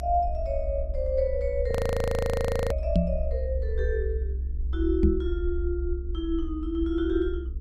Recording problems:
electrical hum; 50 Hz, harmonics up to 450 Hz, SNR 21 dB
low-frequency rumble; below 66 Hz, SNR 2 dB
audio freezing; at 1.5 s for 1 s
microphone bump; at 3 s and at 5 s; peak +9 dB vs average level

